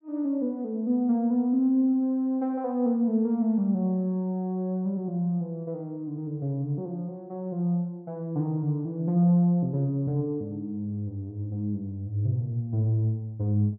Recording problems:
none

